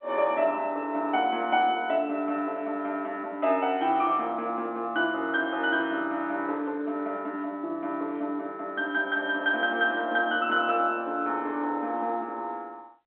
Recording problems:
phone line; 240 Hz to 3.8 kHz, G.711

